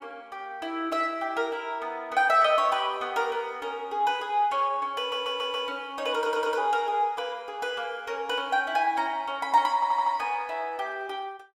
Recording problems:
audio stuttering; at 5 s, at 6 s and at 9.5 s

